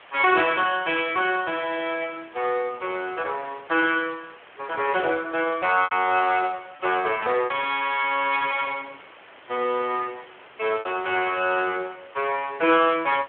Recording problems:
phone line; 280 Hz to 3.3 kHz, Speex
background hiss; SNR 23 dB
packet loss; 1.6% of the sound replaced, filled with repeated pitch periods

